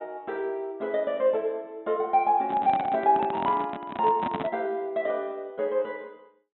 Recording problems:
low-pass filter; nothing above 3.9 kHz
microphone handling noise; from 2.5 to 4.5 s; peak -1 dB vs average level

